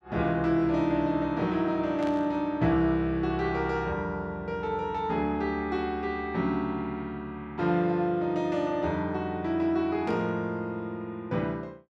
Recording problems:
static burst; at 2 s and at 10 s; peak -13 dB vs average level

